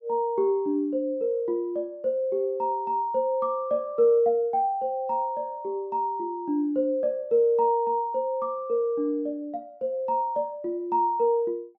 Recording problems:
none

